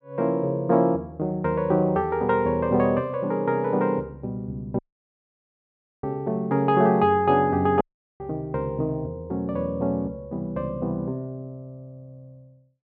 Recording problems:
audio cutting out; at 5 s for 1 s and at 8 s

